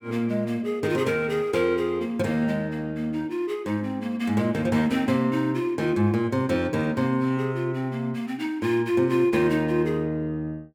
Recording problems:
none

